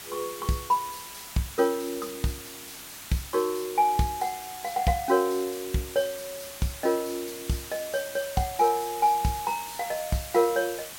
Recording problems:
hiss; slope +1 dB per octave, SNR 11 dB

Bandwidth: 16.5 kHz